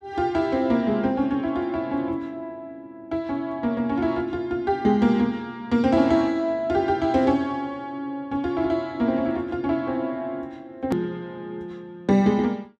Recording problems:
edit click; at 11 s

